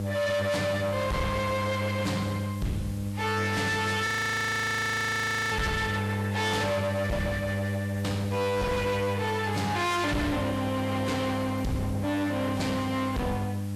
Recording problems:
lossy codec; Vorbis, log-spectral distance 4 dB, nothing above 19.5 kHz
distortion; hard clipping, signal-to-distortion ratio 7 dB
hum; 50 Hz, harmonics up to 800 Hz, SNR 4 dB
background hiss; SNR 21 dB
audio freezing; at 4 s for 1.5 s

